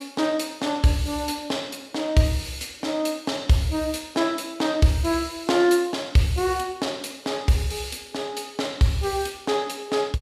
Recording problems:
none

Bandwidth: 14.5 kHz